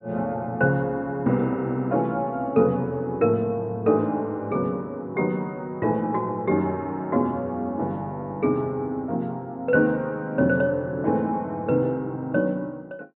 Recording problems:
treble missing; nothing above 4 kHz

